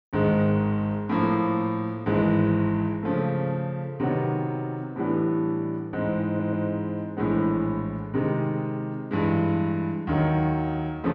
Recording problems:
audio stuttering; at 6.5 s

